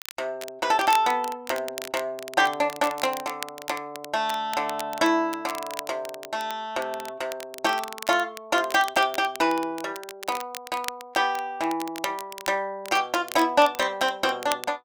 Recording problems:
crackle; vinyl, SNR 13 dB

